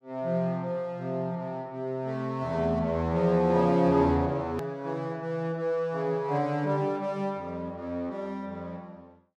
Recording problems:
edit click; at 4.5 s

